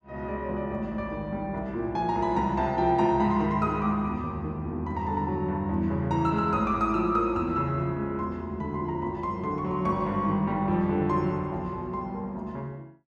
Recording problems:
none

